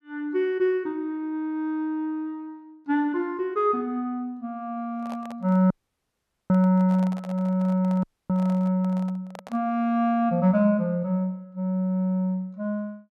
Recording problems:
handling noise; from 5 to 9.5 s; peak -10 dB vs average level
dropout; at 5.5 s for 1 s and at 8 s

